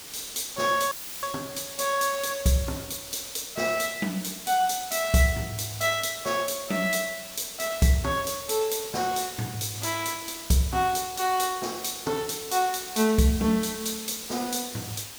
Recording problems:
hiss; slope 0 dB per octave, SNR 11 dB
dropout; at 1 s; filled with static

